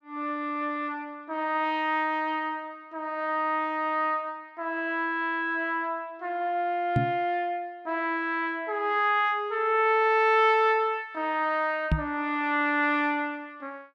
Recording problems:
microphone bump; at 7 s and at 12 s; peak +5 dB vs average level

